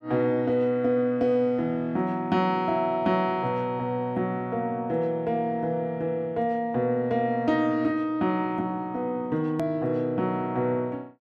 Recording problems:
hard cut with a click; at 9.5 s

